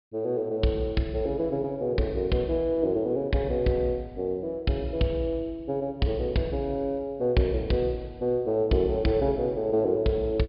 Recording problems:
low-pass filter; nothing above 5.2 kHz

